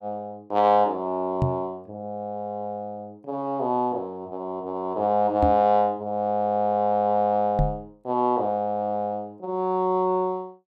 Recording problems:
microphone thump; at 1.5 s, at 5.5 s and at 7.5 s; peak +4 dB vs average level

